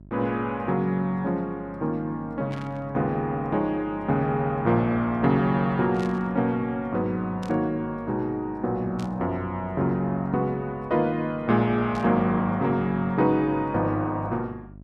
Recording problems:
hum; 50 Hz, harmonics up to 650 Hz, SNR 21 dB
static burst; 5 times, first at 2.5 s; peak -13 dB vs average level

